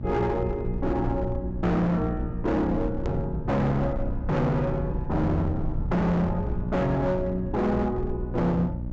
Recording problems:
treble missing; nothing above 8 kHz
distortion; hard clipping, signal-to-distortion ratio 7 dB
hum; 60 Hz, harmonics up to 660 Hz, SNR 10 dB
low-frequency rumble; below 110 Hz, SNR 8 dB
edit click; at 3 s

